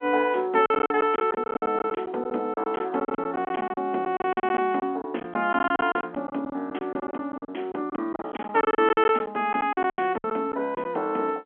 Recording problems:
phone line; 240 Hz to 3.4 kHz, G.711
lost packets; 16% of the sound replaced, filled with silence

